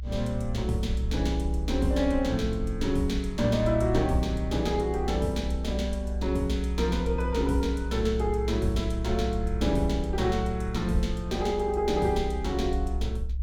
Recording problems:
rumble; below 64 Hz, strongest tone 62 Hz, SNR 4 dB

